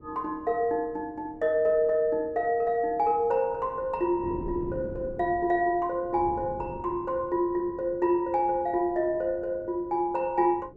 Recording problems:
wind noise; below 370 Hz, SNR 17 dB

